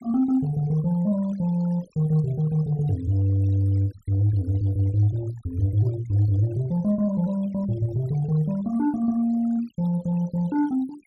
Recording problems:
noise reduction artefacts; signal-to-artefact ratio 24 dB

